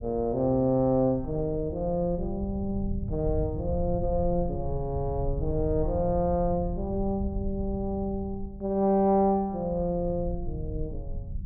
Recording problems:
low-frequency rumble; below 96 Hz, SNR 9 dB

